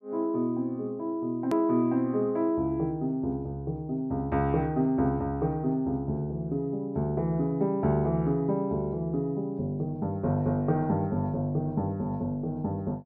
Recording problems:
edit click; at 1.5 s

